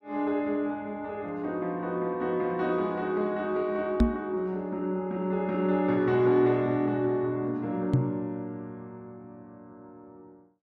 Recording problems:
microphone bump; at 4 s and at 8 s; peak +9 dB vs average level

